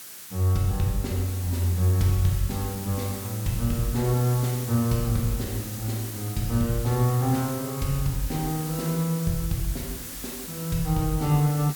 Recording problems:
background hiss; slope +1 dB per octave, SNR 10 dB

